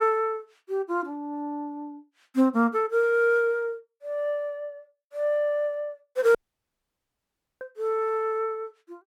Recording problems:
audio cutting out; at 6.5 s for 1.5 s

